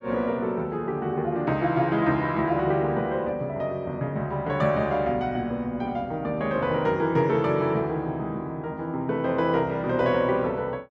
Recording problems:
none

